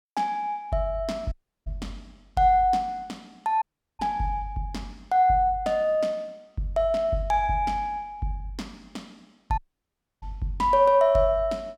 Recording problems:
dropout; at 1.5 s, at 3.5 s and at 9.5 s for 0.5 s

